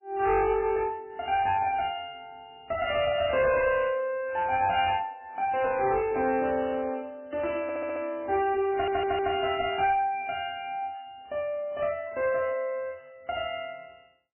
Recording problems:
codec artefacts; MP3, log-spectral distance 3 dB, nothing above 2.7 kHz
distortion; hard clipping, uneven, signal-to-distortion ratio 11 dB
stutter; at 7.5 s and at 8.5 s

